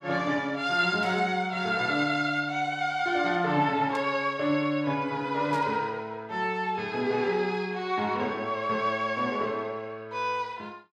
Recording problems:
burst of static; at 1 s, at 4 s and at 5.5 s; peak -12 dB vs average level

